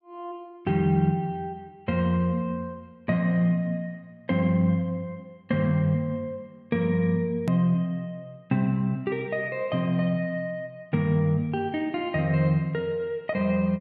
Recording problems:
edit click; at 7.5 s

